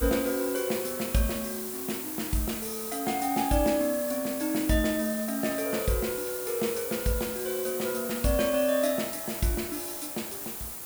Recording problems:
hiss; slope -3 dB per octave, SNR 5 dB

